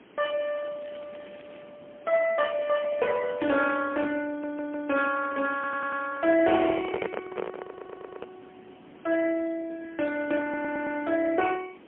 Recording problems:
telephone audio; 110 Hz to 3.3 kHz, AMR-NB, then MP3
hiss; SNR 24 dB
crackling; from 0.5 to 1.5 s and from 5 to 7.5 s; loose cable, SNR 27 dB
stutter; 4 times, first at 4.5 s
microphone handling noise; from 6.5 to 8.5 s; peak 0 dB vs average level

